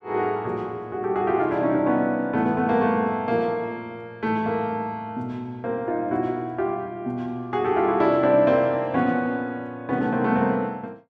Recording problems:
none

